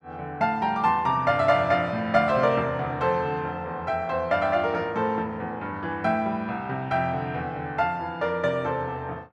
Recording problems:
none

